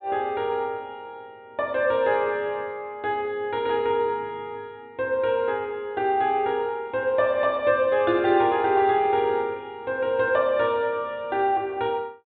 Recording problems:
treble missing; nothing above 4 kHz

